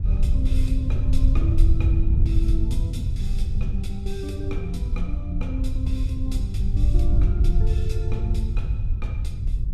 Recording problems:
wind noise; below 80 Hz, SNR -10 dB

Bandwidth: 14.5 kHz